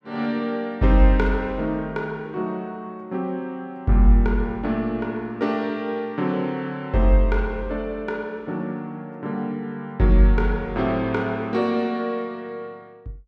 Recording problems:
none

